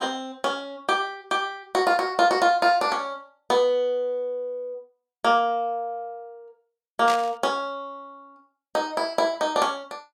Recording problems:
static burst; at 7 s; peak -3 dB vs average level

